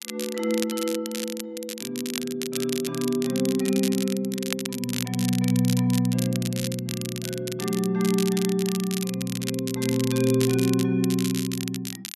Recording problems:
crackling; vinyl, SNR 8 dB

